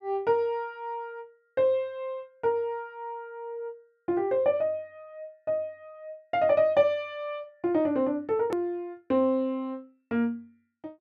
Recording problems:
edit click; at 8.5 s

